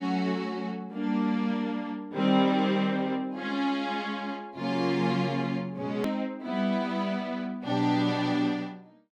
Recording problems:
click at an edit; at 6 s

